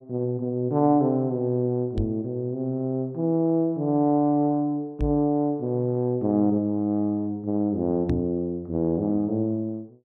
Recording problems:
knock on the microphone; at 2 s, at 5 s and at 8 s; peak +1 dB vs average level

